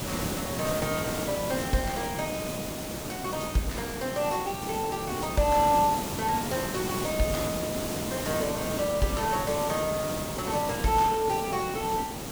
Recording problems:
hiss; SNR 4 dB

